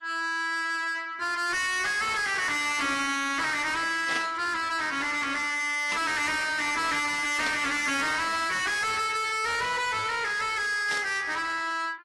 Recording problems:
lossy compression; AAC, log-spectral distance 4 dB, nothing above 11.3 kHz
distortion; soft clipping, signal-to-distortion ratio 6 dB
static burst; 4 times, first at 4 s; peak -3 dB vs average level

